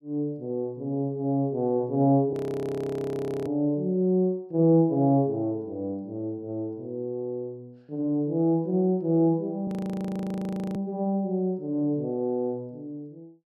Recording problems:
audio freezing; at 2.5 s for 1 s and at 9.5 s for 1 s

